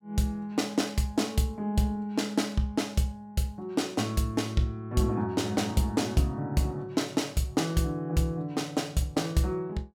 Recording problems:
none

